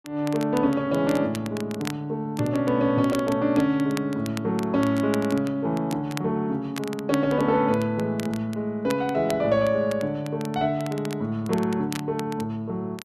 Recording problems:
crackle; vinyl, SNR 17 dB

